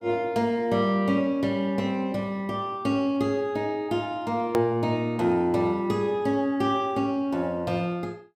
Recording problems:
edit click; at 4.5 s

